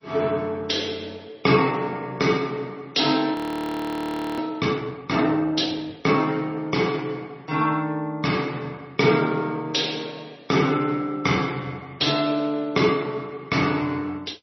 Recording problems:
codec artefacts; MP2, then MP3, log-spectral distance 4 dB, nothing above 5.3 kHz
audio freezing; at 3.5 s for 1 s

